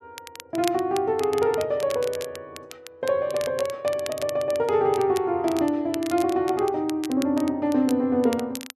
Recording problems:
crackling; vinyl, SNR 16 dB

